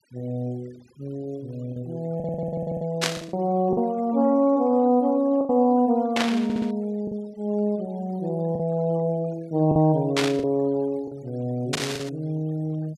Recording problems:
noise reduction artefacts; signal-to-artefact ratio 28 dB
lost packets; 5% of the sound replaced, filled with the last packet
audio stuttering; at 2 s and at 6.5 s
static burst; 4 times, first at 3 s; peak +4 dB vs average level

